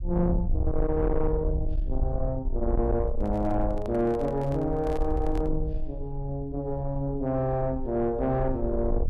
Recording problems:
distorted audio; soft clipping, signal-to-distortion ratio 11 dB
rumble; below 64 Hz, SNR 5 dB
microphone handling noise; from 3 to 5.5 s; peak -6 dB vs average level

